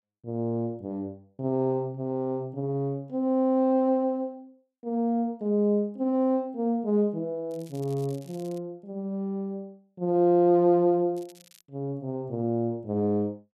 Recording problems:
crackling; from 7.5 to 8.5 s and at 11 s; loose cable, SNR 27 dB

